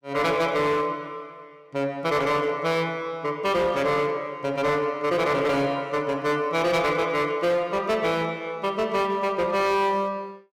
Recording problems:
distorted audio; hard clipping, signal-to-distortion ratio 11 dB

